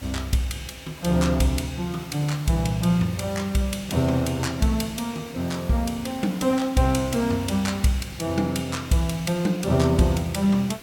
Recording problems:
hiss; slope -2 dB per octave, SNR 19 dB

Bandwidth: 17.5 kHz